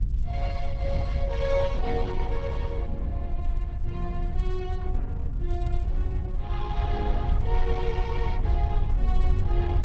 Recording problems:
lossy codec; Opus, log-spectral distance 2 dB, nothing above 7.3 kHz
rumble; below 68 Hz, SNR -5 dB

